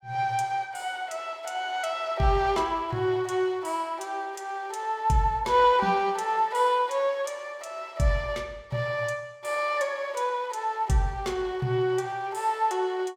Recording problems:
none

